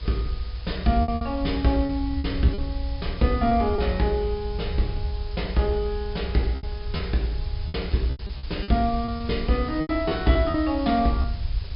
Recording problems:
treble missing; nothing above 5.5 kHz
background hiss; SNR 18 dB
low-frequency rumble; below 74 Hz, SNR 7 dB
packet loss; 8% of the sound replaced, filled with repeated pitch periods

